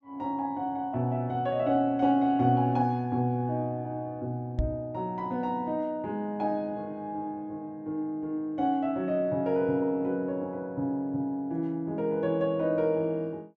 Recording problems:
knock on the microphone; at 4.5 s; peak +4 dB vs average level

